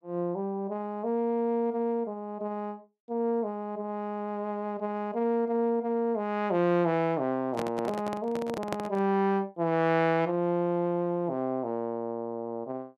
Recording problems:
microphone handling noise; from 7.5 to 9 s; peak 0 dB vs average level

